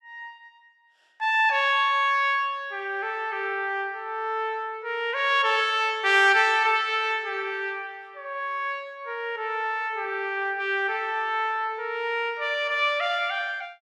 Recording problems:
none

